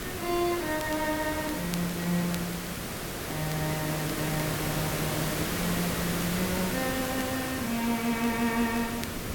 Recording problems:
background hiss; SNR 1 dB
wind on the microphone; below 280 Hz, SNR 19 dB
crackling; vinyl, SNR 18 dB

